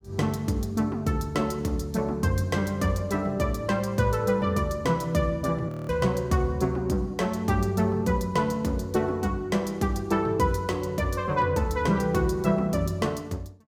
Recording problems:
audio freezing; at 5.5 s

